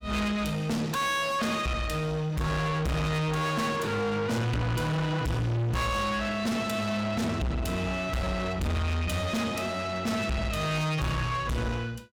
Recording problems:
distortion; soft clipping, signal-to-distortion ratio 6 dB

